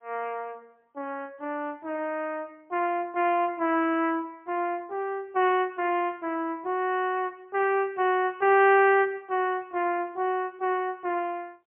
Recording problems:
phone line; 280 Hz to 3.1 kHz, AMR-NB, then MP3

